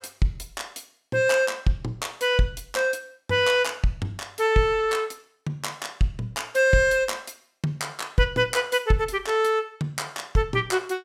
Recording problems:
none

